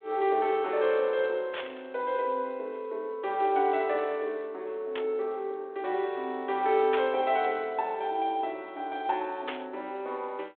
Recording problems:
phone line; 300 Hz to 3.6 kHz, G.726
burst of static; 4 times, first at 1.5 s; peak -1 dB vs average level

